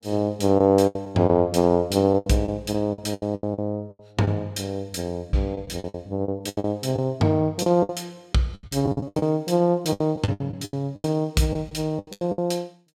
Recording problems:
lost packets; 15% of the sound replaced, filled with the last packet

